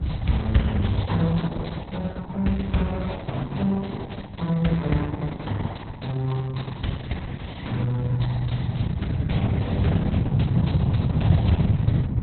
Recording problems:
lossy compression; Opus, log-spectral distance 5 dB, nothing above 4.1 kHz
wind noise; below 160 Hz, SNR -3 dB

